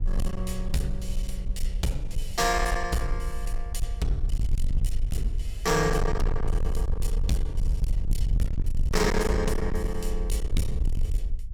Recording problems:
distorted audio; hard clipping, uneven, signal-to-distortion ratio 6 dB
low-frequency rumble; below 56 Hz, strongest tone 22 Hz, SNR 1 dB

